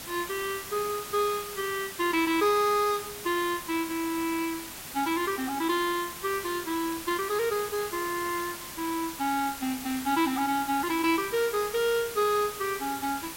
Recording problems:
hiss; slope -1 dB per octave, SNR 9 dB

